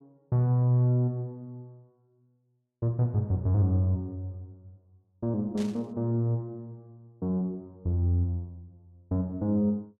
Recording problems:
burst of static; at 5.5 s; peak -12 dB vs average level

